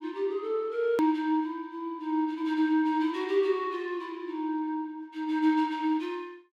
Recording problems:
edit click; at 1 s

